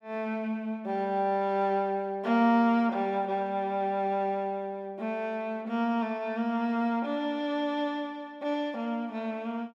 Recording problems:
none

